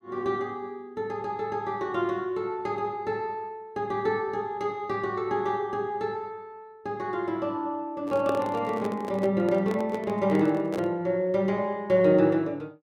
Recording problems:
microphone handling noise; from 8 to 11 s; peak +1 dB vs average level

